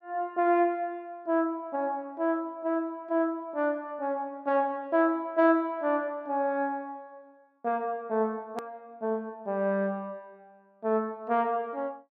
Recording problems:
edit click; at 8.5 s

